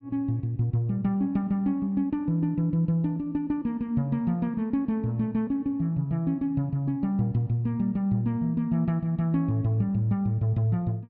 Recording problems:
none

